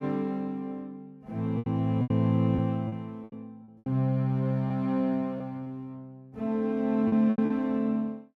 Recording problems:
lost packets; 8% of the sound replaced, filled with repeated pitch periods

